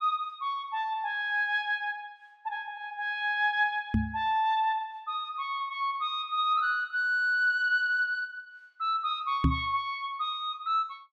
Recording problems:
knock on the microphone; at 4 s and at 9.5 s; peak +7 dB vs average level

